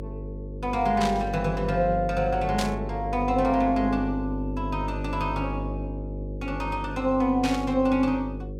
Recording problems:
hum; 50 Hz, harmonics up to 550 Hz, SNR 7 dB
static burst; at 1 s, at 2.5 s and at 7.5 s; peak -1 dB vs average level

